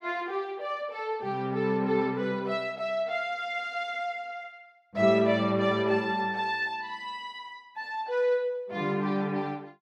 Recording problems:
none

